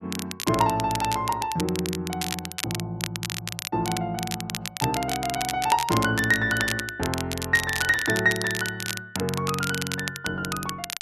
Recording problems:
crackle; vinyl, SNR 6 dB

